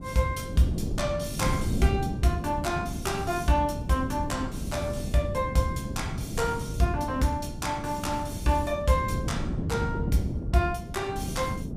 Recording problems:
wind noise; below 230 Hz, SNR 5 dB

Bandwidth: 15.5 kHz